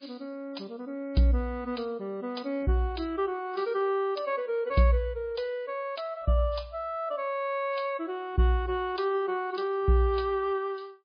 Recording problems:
codec artefacts; MP3, log-spectral distance 3 dB, nothing above 5 kHz

